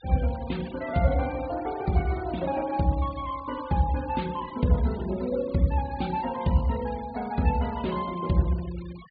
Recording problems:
treble cut off; nothing above 4.6 kHz
noise reduction artefacts; signal-to-artefact ratio 19 dB

